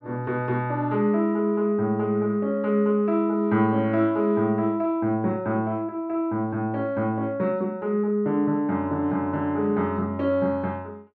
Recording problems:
none

